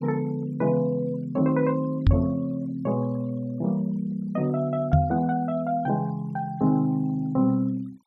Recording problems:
denoising artefacts; signal-to-artefact ratio 26 dB
knock on the microphone; at 2 s and at 5 s; peak +9 dB vs average level

